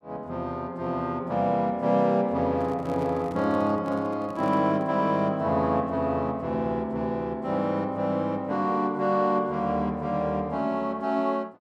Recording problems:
handling noise; from 2.5 to 5 s; peak -9 dB vs average level

